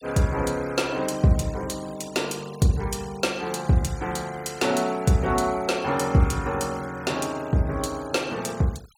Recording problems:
noise reduction artefacts; signal-to-artefact ratio 21 dB

